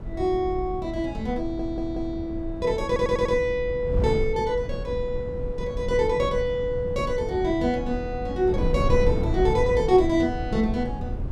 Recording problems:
wind on the microphone; below 130 Hz, SNR 7 dB
stutter; at 1.5 s and at 3 s

